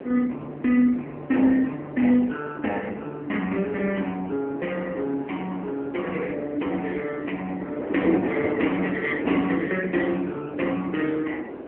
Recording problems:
phone line; 240 Hz to 3.3 kHz, AMR-NB
wind on the microphone; below 550 Hz, SNR 8 dB

